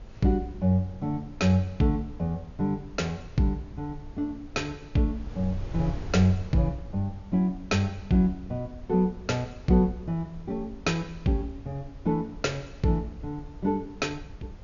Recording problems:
treble cut off; nothing above 7 kHz
wind noise; below 110 Hz, SNR 16 dB

